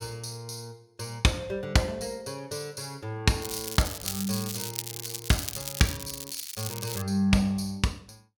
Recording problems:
crackling; from 3.5 to 7 s; loose cable, SNR 5 dB

